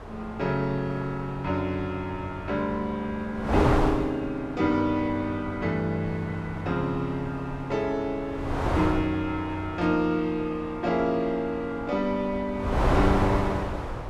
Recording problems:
wind on the microphone; below 870 Hz, SNR 5 dB

